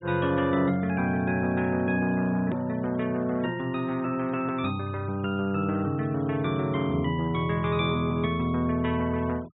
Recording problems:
low-pass filter; nothing above 4 kHz
noise reduction artefacts; signal-to-artefact ratio 25 dB
edit click; at 2.5 s

